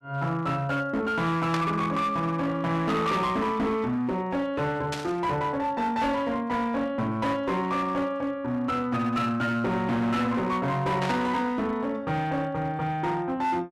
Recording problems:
distortion; hard clipping, signal-to-distortion ratio 10 dB
static burst; at 1.5 s, at 5 s and at 11 s; peak -1 dB vs average level

